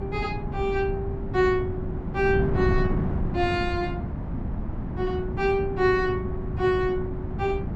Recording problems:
wind noise; below 210 Hz, SNR 4 dB

